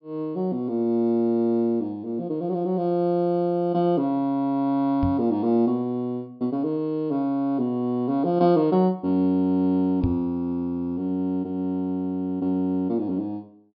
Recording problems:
low-pass filter; nothing above 5.5 kHz
microphone thump; at 5 s and at 10 s; peak +2 dB vs average level

